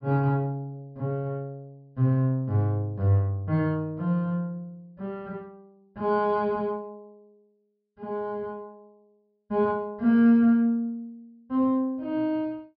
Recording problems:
treble cut off; nothing above 5.5 kHz

